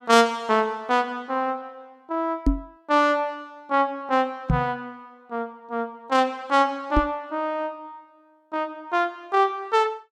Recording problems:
microphone thump; at 2.5 s, at 4.5 s and at 7 s; peak +7 dB vs average level

